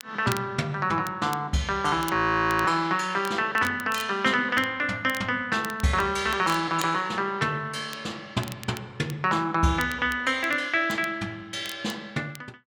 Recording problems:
crackling; vinyl, SNR 17 dB
audio freezing; at 2 s for 0.5 s

